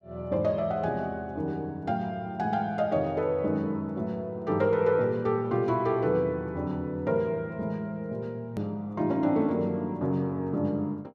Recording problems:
edit click; at 8.5 s

